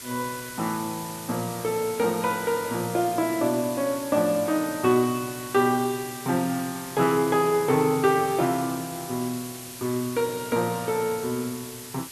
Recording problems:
hiss; SNR 12 dB

